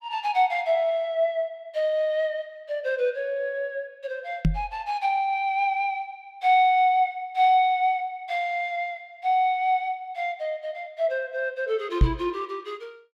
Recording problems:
knock on the microphone; at 4.5 s and at 12 s; peak +9 dB vs average level

